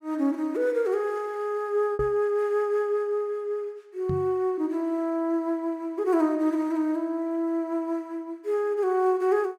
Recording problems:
lost packets; 0.6% of the sound replaced, filled with repeated pitch periods
knock on the microphone; at 2 s and at 4 s; peak -2 dB vs average level

